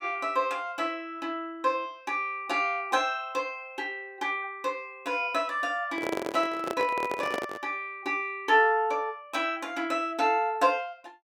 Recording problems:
microphone handling noise; from 6 to 7.5 s; peak +1 dB vs average level

